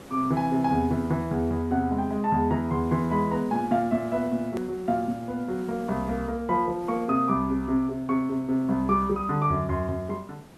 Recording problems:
background hiss; slope -6 dB per octave, SNR 20 dB
hard cut with a click; at 4.5 s

